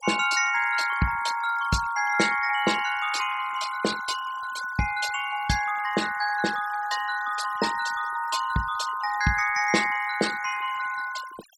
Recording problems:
denoising artefacts; signal-to-artefact ratio 12 dB

